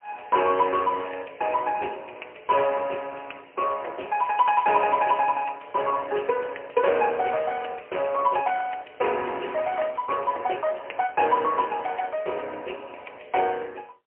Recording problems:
phone line; 320 Hz to 3 kHz, AMR-NB, then MP3

